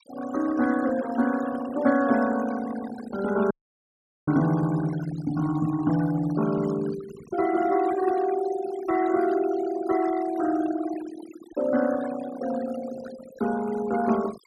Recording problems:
denoising artefacts; signal-to-artefact ratio 14 dB
audio cutting out; at 3.5 s for 1 s

